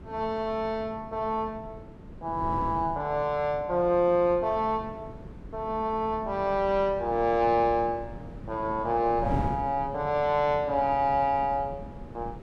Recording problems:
wind noise; below 280 Hz, SNR 14 dB

